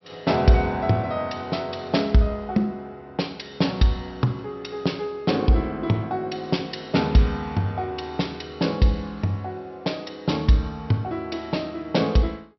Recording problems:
low-pass filter; nothing above 5.7 kHz

